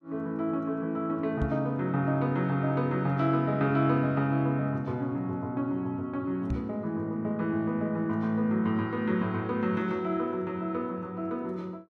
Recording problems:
knock on the microphone; at 1.5 s and at 6.5 s; peak 0 dB vs average level

